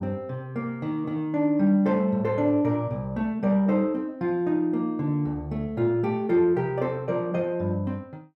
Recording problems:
none

